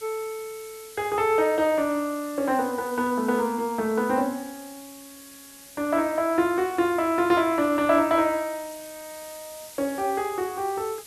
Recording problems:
background hiss; SNR 19 dB

